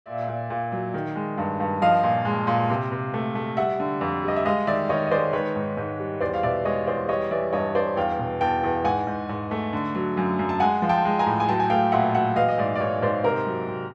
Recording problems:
none

